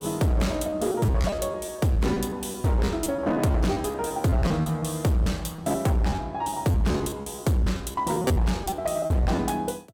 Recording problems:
distorted audio; hard clipping, uneven, signal-to-distortion ratio 11 dB
lost packets; 14% of the sound replaced, filled with repeated pitch periods

